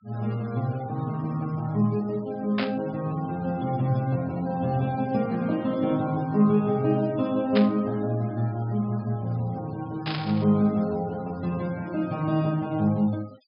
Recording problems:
treble cut off; nothing above 5.5 kHz
noise reduction artefacts; signal-to-artefact ratio 25 dB
static burst; at 2.5 s, at 7.5 s and at 10 s; peak +1 dB vs average level

